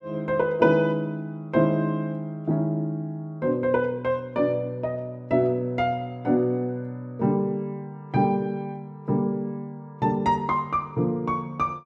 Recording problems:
none

